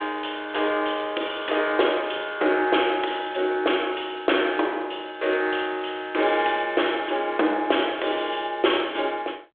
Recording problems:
phone line; 280 Hz to 3.5 kHz, G.726

